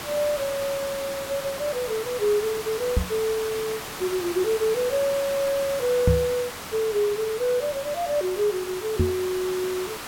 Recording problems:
hiss; SNR 8 dB
microphone thump; at 3 s, at 6 s and at 9 s; peak +8 dB vs average level

